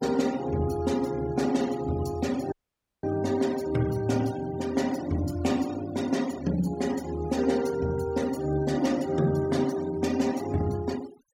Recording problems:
noise reduction artefacts; signal-to-artefact ratio 17 dB
audio cutting out; at 2.5 s for 0.5 s

